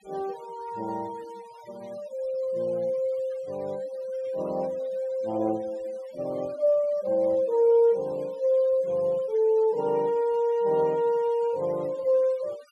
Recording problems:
denoising artefacts; signal-to-artefact ratio 26 dB

